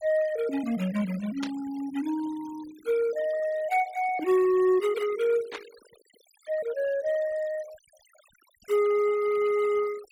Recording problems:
denoising artefacts; signal-to-artefact ratio 21 dB
burst of static; at 1.5 s and at 5.5 s; peak -5 dB vs average level

